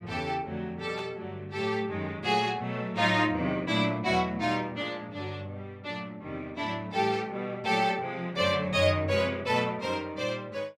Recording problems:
burst of static; at 1 s; peak -10 dB vs average level

